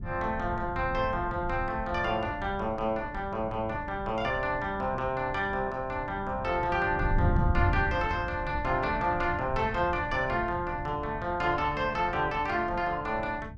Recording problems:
wind noise; below 130 Hz, SNR 8 dB

